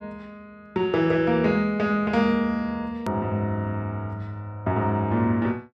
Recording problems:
edit click; at 3 s

